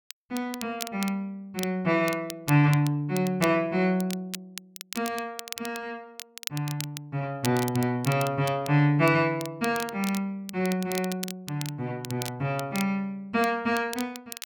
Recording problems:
crackling; vinyl, SNR 12 dB

